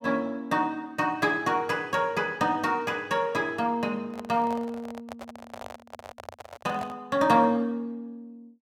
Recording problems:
microphone handling noise; from 4 to 7 s; peak -7 dB vs average level

